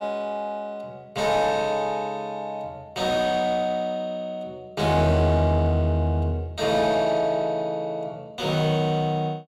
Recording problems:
distorted audio; soft clipping, signal-to-distortion ratio 11 dB

